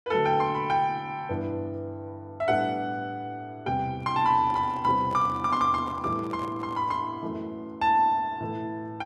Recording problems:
microphone handling noise; from 4 to 7 s; peak -11 dB vs average level

